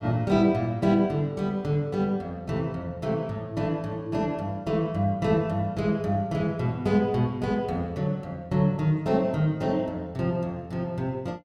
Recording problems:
none

